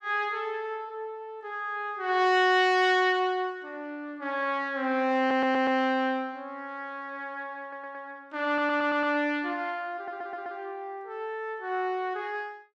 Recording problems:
stutter; 4 times, first at 5 s

